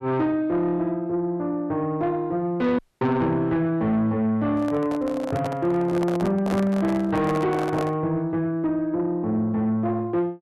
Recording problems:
distorted audio; soft clipping, signal-to-distortion ratio 11 dB
dropout; at 3 s
microphone handling noise; from 4.5 to 8 s; peak -2 dB vs average level

